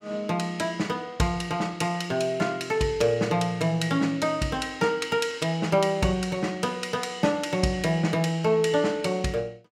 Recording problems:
none

